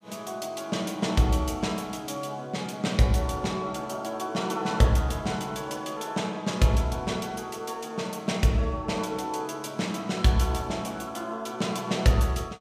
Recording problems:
none

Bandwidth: 15 kHz